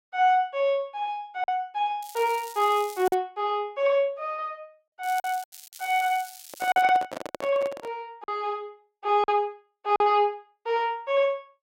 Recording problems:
lost packets; 3% of the sound replaced, filled with silence
crackle; from 2 to 3 s and from 5 to 7 s; loose cable, SNR 17 dB
handling noise; from 6.5 to 8 s; peak -5 dB vs average level

